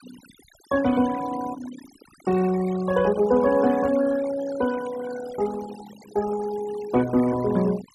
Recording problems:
denoising artefacts; signal-to-artefact ratio 16 dB

